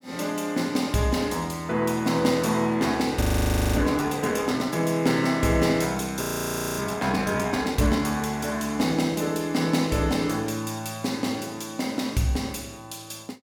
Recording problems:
frozen audio; at 3 s for 0.5 s and at 6 s for 0.5 s

